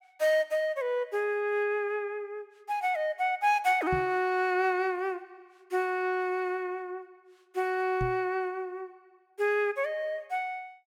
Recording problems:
knock on the microphone; at 4 s and at 8 s; peak -2 dB vs average level

